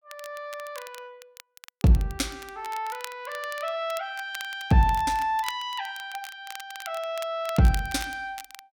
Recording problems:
crackle; vinyl, SNR 16 dB

